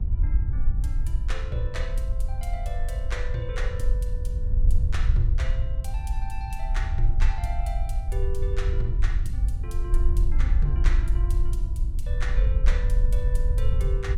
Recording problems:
electrical hum; 60 Hz, harmonics up to 1.3 kHz, SNR 22 dB
rumble; below 66 Hz, SNR 0 dB
wind noise; below 58 Hz, SNR -8 dB

